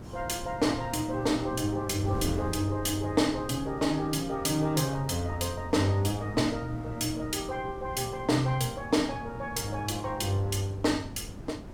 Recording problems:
wind on the microphone; below 270 Hz, SNR 13 dB

